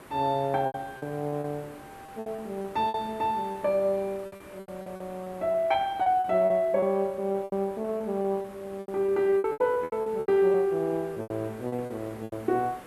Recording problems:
background hiss; SNR 20 dB
packet loss; 14% of the sound replaced, filled with repeated pitch periods

